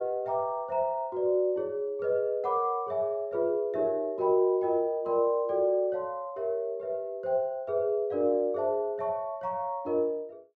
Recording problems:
none

